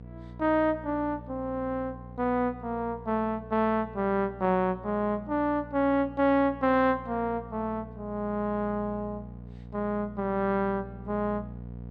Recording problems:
hum; 60 Hz, harmonics up to 720 Hz, SNR 16 dB

